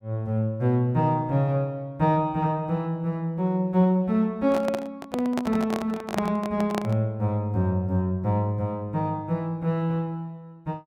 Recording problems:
microphone handling noise; from 4.5 to 7 s; peak +1 dB vs average level

